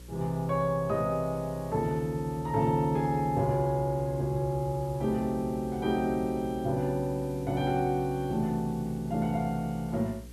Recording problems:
hum; 60 Hz, harmonics up to 540 Hz, SNR 18 dB
background hiss; slope 0 dB per octave, SNR 25 dB

